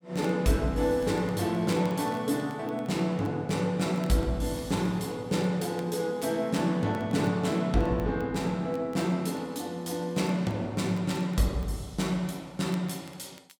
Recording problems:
crackling; vinyl, SNR 27 dB

